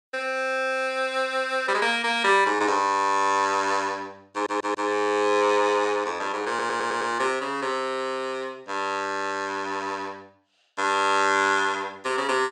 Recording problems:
audio stuttering; at 4.5 s and at 6.5 s

